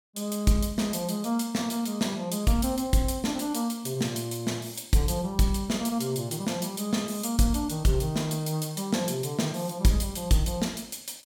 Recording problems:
none

